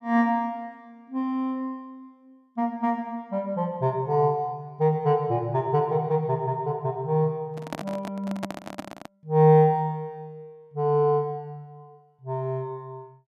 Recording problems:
microphone handling noise; from 7.5 to 9 s; peak -2 dB vs average level

